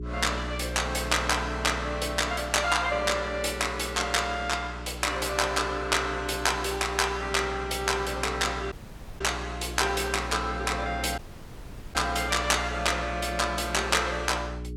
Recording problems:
hum; 60 Hz, harmonics up to 420 Hz, SNR 11 dB
dropout; at 8.5 s and at 11 s for 1 s

